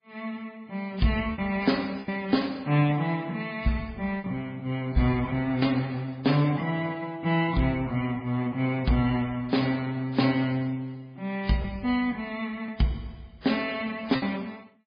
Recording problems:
codec artefacts; Vorbis, then MP3, log-spectral distance 3 dB
lost packets; 3% of the sound replaced, filled with repeated pitch periods

